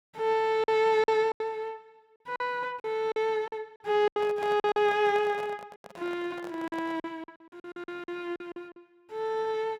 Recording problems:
packet loss; 11% of the sound replaced, filled with silence
handling noise; from 4 to 7 s; peak -9 dB vs average level

